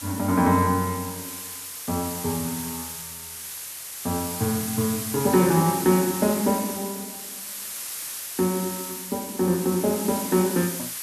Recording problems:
background hiss; slope +2 dB per octave, SNR 7 dB

